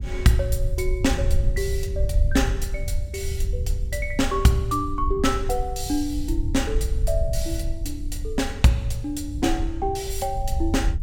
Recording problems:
rumble; below 72 Hz, SNR 3 dB

